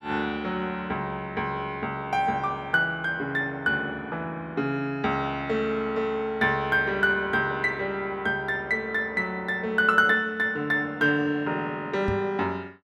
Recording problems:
knock on the microphone; at 12 s; peak 0 dB vs average level

